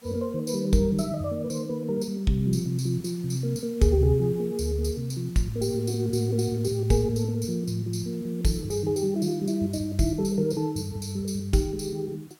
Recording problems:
hiss; slope -2 dB per octave, SNR 27 dB

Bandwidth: 16.5 kHz